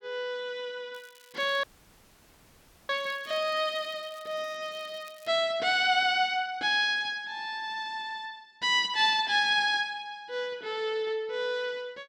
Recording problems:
crackling; from 1 to 5.5 s; loose cable, SNR 27 dB
dropout; at 1.5 s for 1.5 s

